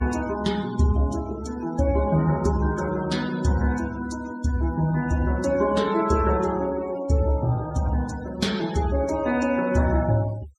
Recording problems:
denoising artefacts; signal-to-artefact ratio 17 dB

